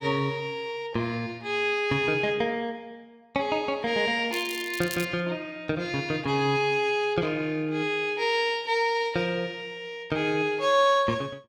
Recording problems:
crackle; at 4.5 s; loose cable, SNR 13 dB

